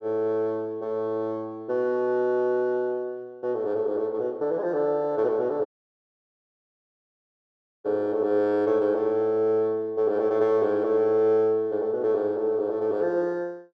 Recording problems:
dropout; at 5.5 s for 2 s

